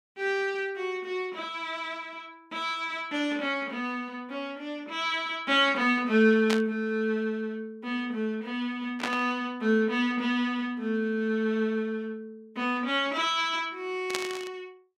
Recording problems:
burst of static; at 6.5 s, at 9 s and at 14 s; peak +2 dB vs average level

